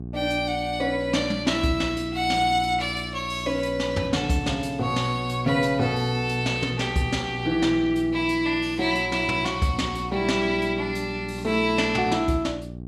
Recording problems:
hum; 60 Hz, harmonics up to 780 Hz, SNR 13 dB

